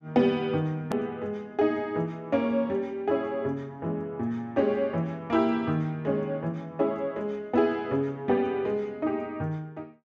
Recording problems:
click at an edit; at 1 s

